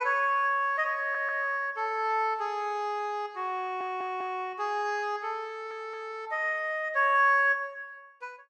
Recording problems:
audio stuttering; at 1 s, at 3.5 s and at 5.5 s

